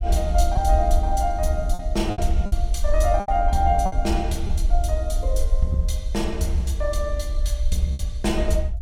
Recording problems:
rumble; below 58 Hz, SNR 1 dB
lost packets; 5% of the sound replaced, filled with repeated pitch periods

